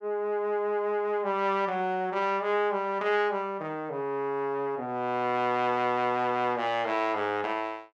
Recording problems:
none

